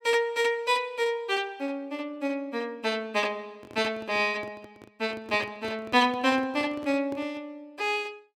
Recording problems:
handling noise; from 3.5 to 7.5 s; peak -9 dB vs average level

